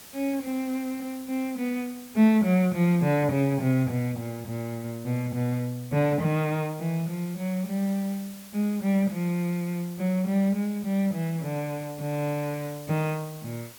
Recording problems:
background hiss; slope -1 dB per octave, SNR 19 dB

